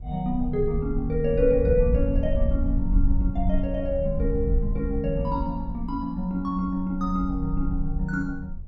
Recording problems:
wind noise; below 64 Hz, SNR 3 dB

